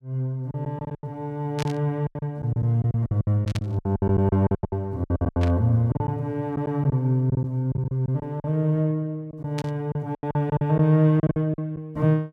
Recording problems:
packet loss; 15% of the sound replaced, filled with silence
burst of static; 4 times, first at 1.5 s; peak -5 dB vs average level

